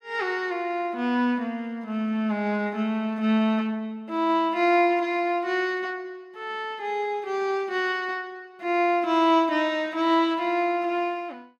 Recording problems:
none

